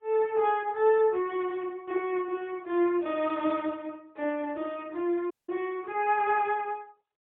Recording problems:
phone line; 220 Hz to 3.5 kHz, AMR-NB, then MP3
dropout; at 5.5 s

